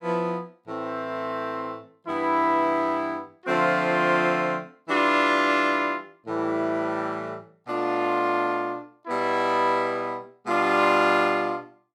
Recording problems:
none

